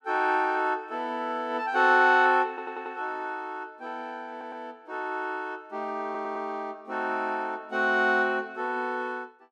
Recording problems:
audio stuttering; at 2.5 s, at 4.5 s and at 6 s

